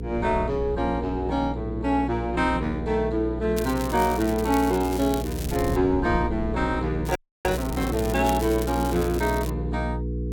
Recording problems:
hum; 60 Hz, harmonics up to 480 Hz, SNR 6 dB
wind on the microphone; below 150 Hz, SNR 13 dB
crackle; from 3.5 to 6 s and from 7 to 9.5 s; loose cable, SNR 13 dB
frozen audio; at 7 s

